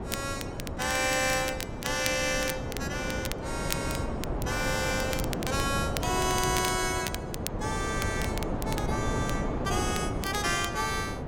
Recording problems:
wind noise; below 540 Hz, SNR 3 dB
crackling; vinyl, SNR 9 dB

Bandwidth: 16.5 kHz